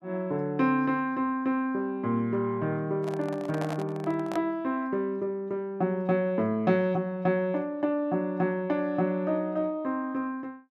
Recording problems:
handling noise; from 3 to 4.5 s; peak -5 dB vs average level

